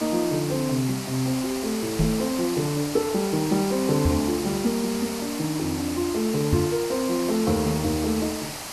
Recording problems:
background hiss; SNR 8 dB
knock on the microphone; at 2 s, at 4 s and at 6.5 s; peak +6 dB vs average level

